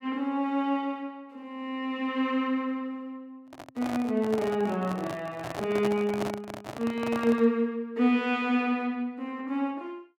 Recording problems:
microphone handling noise; from 3.5 to 7.5 s; peak -1 dB vs average level

